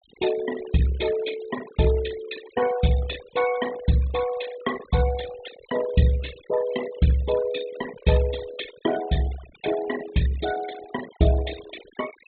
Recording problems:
treble missing; nothing above 4 kHz
noise reduction artefacts; signal-to-artefact ratio 14 dB

